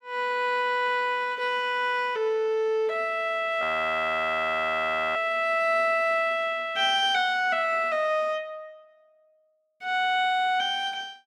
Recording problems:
frozen audio; at 3.5 s for 1.5 s

